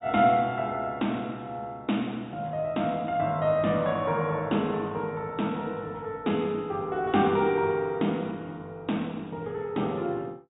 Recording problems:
treble missing; nothing above 4 kHz

